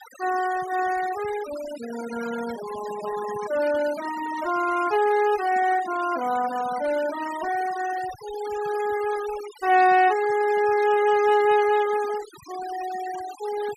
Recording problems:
noise reduction artefacts; signal-to-artefact ratio 15 dB

